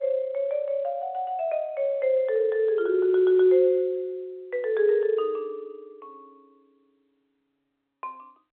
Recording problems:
phone line; 320 Hz to 3.6 kHz, G.711

